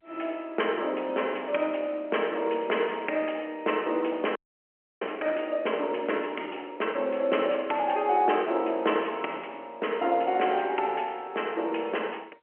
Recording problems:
telephone audio; 280 Hz to 3.1 kHz, G.711
frozen audio; at 4.5 s for 0.5 s

